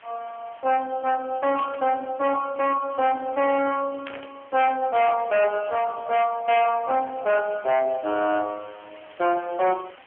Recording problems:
phone line; 470 Hz to 3.3 kHz, AMR-NB
distorted audio; hard clipping, signal-to-distortion ratio 8 dB
background hiss; SNR 27 dB
static burst; at 1.5 s and at 4 s; peak -9 dB vs average level

